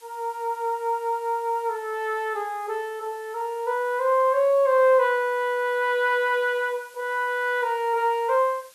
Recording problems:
hiss; slope +2 dB per octave, SNR 27 dB

